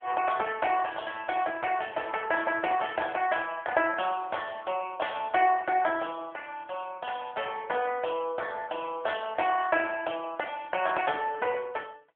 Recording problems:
telephone audio; 300 Hz to 3.5 kHz, AMR-NB

